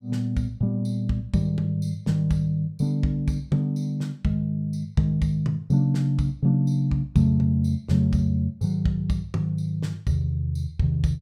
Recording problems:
none

